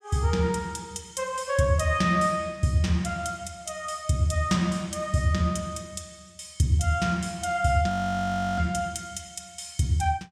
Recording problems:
audio freezing; at 8 s for 0.5 s

